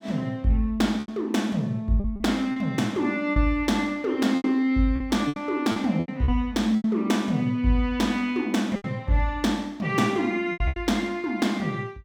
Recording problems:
packet loss; 8% of the sound replaced, filled with repeated pitch periods

